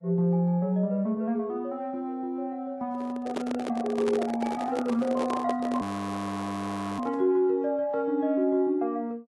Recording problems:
codec artefacts; AAC, log-spectral distance 2 dB, nothing above 12 kHz
microphone handling noise; from 3 to 7.5 s; peak +1 dB vs average level
frozen audio; at 6 s for 1 s

